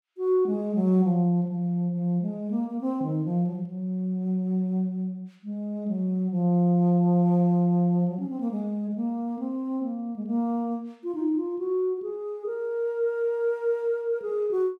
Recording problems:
none

